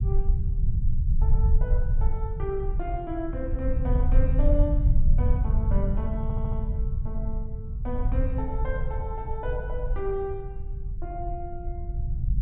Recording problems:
treble cut off; nothing above 4 kHz
rumble; below 70 Hz, SNR -6 dB
audio stuttering; at 6 s

